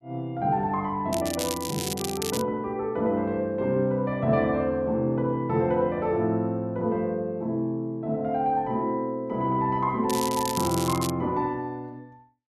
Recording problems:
crackle; from 1 to 2.5 s and from 10 to 11 s; loose cable, SNR 7 dB

